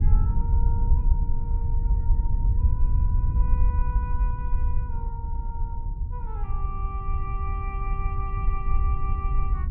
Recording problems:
rumble; below 72 Hz, SNR -12 dB

